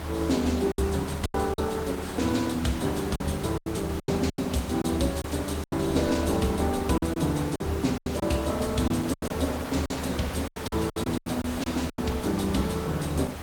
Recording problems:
codec artefacts; Opus, log-spectral distance 5 dB, nothing above 18.9 kHz
hiss; slope -5 dB per octave, SNR 9 dB
rumble; below 80 Hz, strongest tone 76 Hz, SNR 8 dB
lost packets; 10% of the sound replaced, filled with silence

